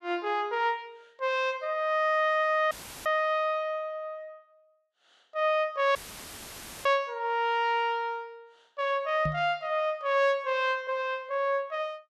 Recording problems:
audio cutting out; at 2.5 s and at 6 s for 1 s; filled with static
microphone bump; at 9.5 s; peak -1 dB vs average level

